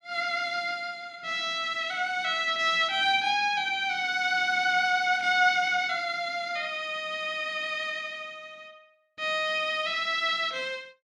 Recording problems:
none

